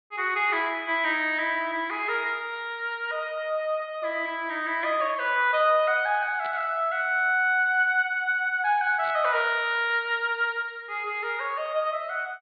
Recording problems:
low-pass filter; nothing above 4.6 kHz
burst of static; at 6.5 s and at 9 s; peak -14 dB vs average level

